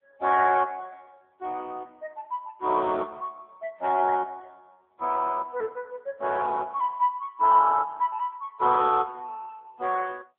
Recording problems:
telephone audio; 240 Hz to 2.6 kHz, AMR-NB

